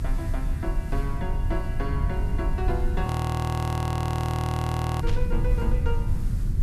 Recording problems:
hum; 50 Hz, harmonics up to 550 Hz, SNR 17 dB
background hiss; SNR 18 dB
low-frequency rumble; below 120 Hz, SNR -6 dB
frozen audio; at 3 s for 2 s
static burst; at 5 s; peak -1 dB vs average level

